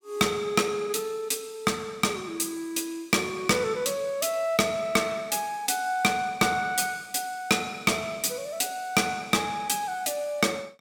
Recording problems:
distorted audio; hard clipping, signal-to-distortion ratio 12 dB

